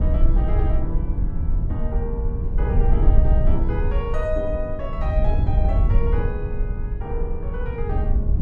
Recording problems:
rumble; below 70 Hz, SNR -8 dB

